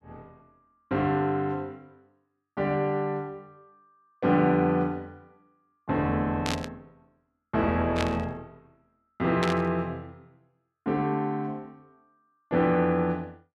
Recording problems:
burst of static; at 6.5 s, at 8 s and at 9.5 s; peak +1 dB vs average level

